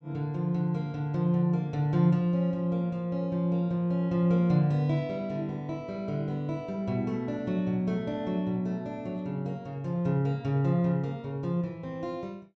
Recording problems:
low-pass filter; nothing above 8 kHz

